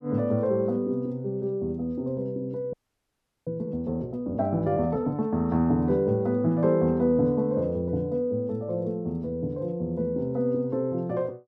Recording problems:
frozen audio; at 2.5 s for 0.5 s

